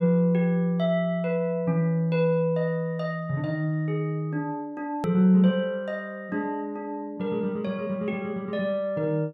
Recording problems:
click at an edit; at 5 s

